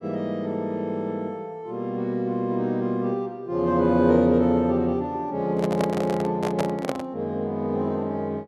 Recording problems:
handling noise; from 5.5 to 7 s; peak +2 dB vs average level

